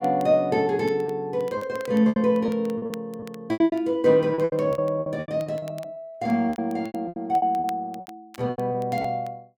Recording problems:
crackle; vinyl, SNR 27 dB
lost packets; 15% of the sound replaced, filled with repeated pitch periods

